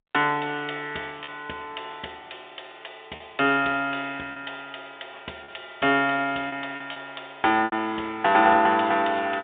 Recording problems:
telephone audio; 240 Hz to 3.7 kHz, G.711
packet loss; 4% of the sound replaced, filled with repeated pitch periods

